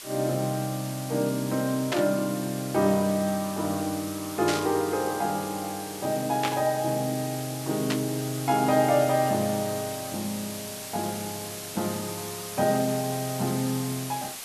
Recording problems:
background hiss; slope +1 dB per octave, SNR 9 dB
burst of static; 4 times, first at 2 s; peak +2 dB vs average level

